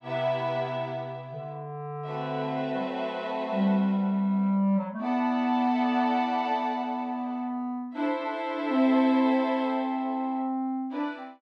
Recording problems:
none

